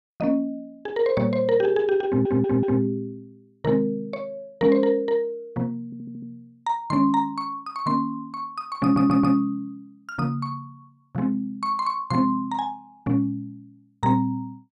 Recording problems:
stutter; at 2 s, at 6 s and at 9 s

